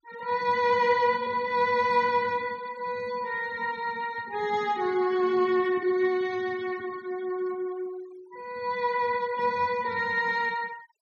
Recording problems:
denoising artefacts; signal-to-artefact ratio 24 dB

